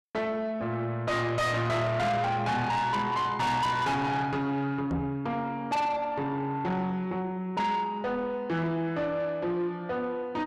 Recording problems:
distortion; soft clipping, signal-to-distortion ratio 8 dB
microphone thump; at 5 s; peak +2 dB vs average level

